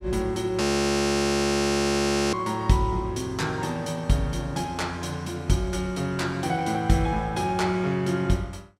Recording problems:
frozen audio; at 0.5 s for 1.5 s

